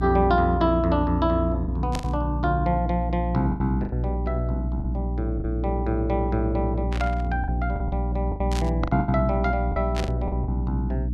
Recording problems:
hum; 60 Hz, harmonics up to 300 Hz, SNR 2 dB
packet loss; 8% of the sound replaced, filled with the last packet
burst of static; 4 times, first at 2 s; peak -3 dB vs average level

